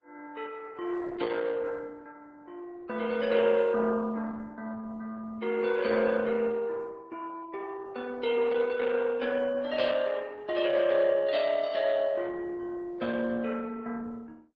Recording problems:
codec artefacts; Vorbis, then Opus, log-spectral distance 4 dB

